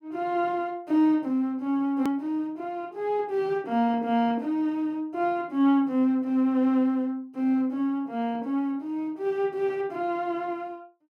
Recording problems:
edit click; at 2 s

